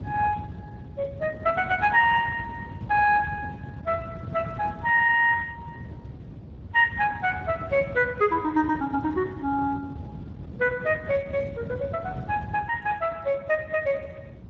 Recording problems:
lossy compression; Speex, log-spectral distance 3 dB
wind noise; below 240 Hz, SNR 13 dB

